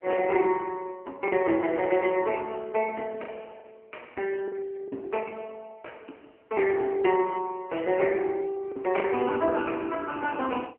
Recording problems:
telephone audio; 240 Hz to 3.1 kHz, AMR-NB
packet loss; 3% of the sound replaced, filled with the last packet

